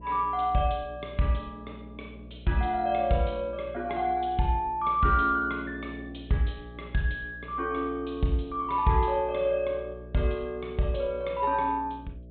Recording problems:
treble missing; nothing above 4 kHz
electrical hum; 60 Hz, harmonics up to 660 Hz, SNR 18 dB

